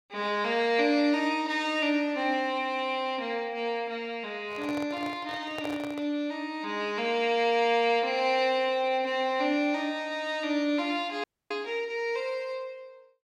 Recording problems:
microphone handling noise; from 4.5 to 6 s; peak -6 dB vs average level
frozen audio; at 11 s

